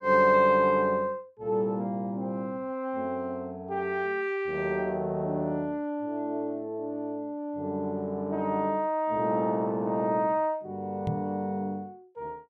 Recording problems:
knock on the microphone; at 11 s; peak +1 dB vs average level

